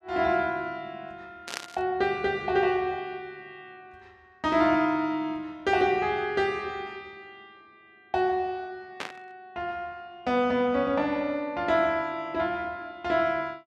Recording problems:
burst of static; at 1.5 s and at 9 s; peak -2 dB vs average level

